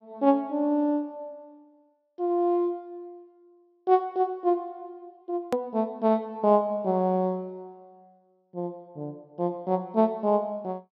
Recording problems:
low-pass filter; nothing above 5.9 kHz
hard cut with a click; at 5.5 s

